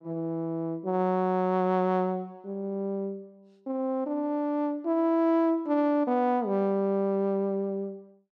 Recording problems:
none

